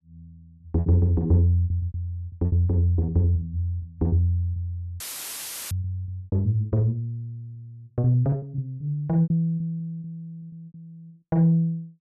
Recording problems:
packet loss; 14% of the sound replaced, filled with repeated pitch periods
audio cutting out; at 5 s for 0.5 s; filled with static

